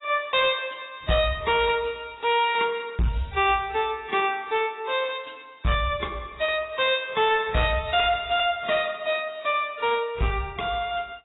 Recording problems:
codec artefacts; AAC, log-spectral distance 5 dB, nothing above 3.3 kHz
distortion; hard clipping, signal-to-distortion ratio 10 dB

